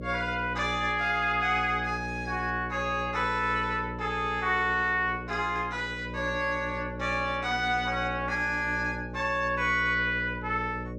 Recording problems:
hum; 60 Hz, harmonics up to 600 Hz, SNR 11 dB

